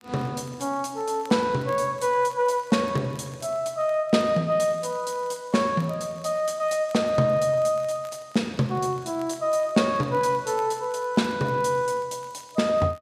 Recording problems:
crackle; vinyl, SNR 29 dB

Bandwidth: 14.5 kHz